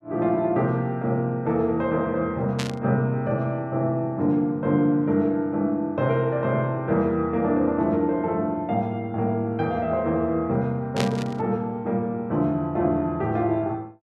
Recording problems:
static burst; at 2.5 s and at 11 s; peak 0 dB vs average level

